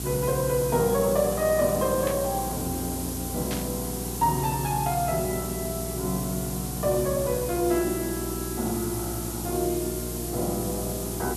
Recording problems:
electrical hum; 60 Hz, harmonics up to 840 Hz, SNR 8 dB
background hiss; SNR 6 dB
static burst; at 2 s and at 3.5 s; peak -4 dB vs average level

